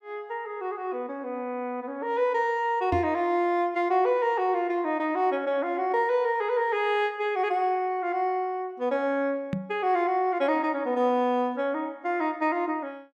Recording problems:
microphone thump; at 3 s and at 9.5 s; peak 0 dB vs average level

